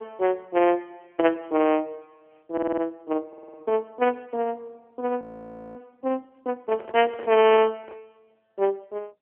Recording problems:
telephone audio; 260 Hz to 3.2 kHz, AMR-NB
stutter; at 2.5 s and at 3.5 s
audio freezing; at 5 s for 0.5 s
handling noise; from 6.5 to 8 s; peak -9 dB vs average level

